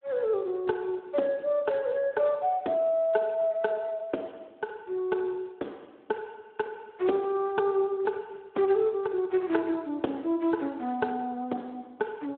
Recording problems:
phone line; 220 Hz to 2.8 kHz, Speex

